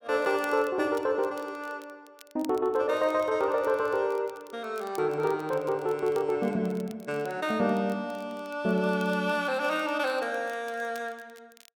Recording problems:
crackle; vinyl, SNR 26 dB

